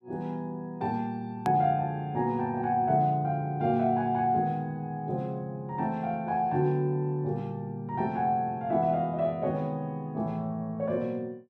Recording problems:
edit click; at 1.5 s

